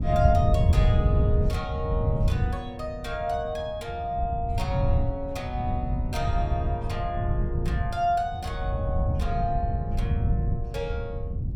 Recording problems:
wind on the microphone; below 120 Hz, SNR -3 dB

